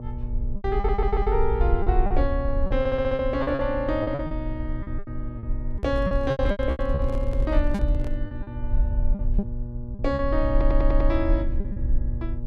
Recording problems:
hum; 60 Hz, harmonics up to 840 Hz, SNR 10 dB
rumble; below 54 Hz, SNR 2 dB
lost packets; 13% of the sound replaced, filled with repeated pitch periods
audio stuttering; at 1 s, at 3 s and at 11 s
handling noise; from 5.5 to 8 s; peak -2 dB vs average level

